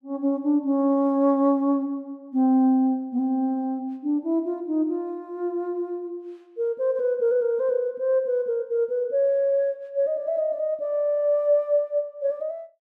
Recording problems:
none

